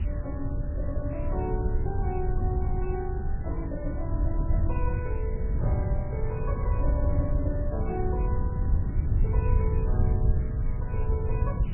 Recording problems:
lossy compression; MP3, log-spectral distance 3 dB, nothing above 2.6 kHz
background hiss; SNR 18 dB
wind noise; below 94 Hz, SNR -7 dB

